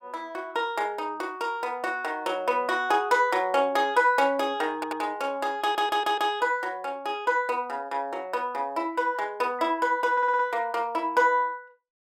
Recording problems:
audio stuttering; at 5 s, at 5.5 s and at 10 s

